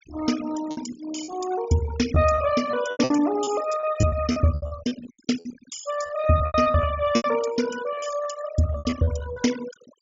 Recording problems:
treble cut off; nothing above 7.3 kHz
denoising artefacts; signal-to-artefact ratio 13 dB
lost packets; 14% of the sound replaced, filled with repeated pitch periods

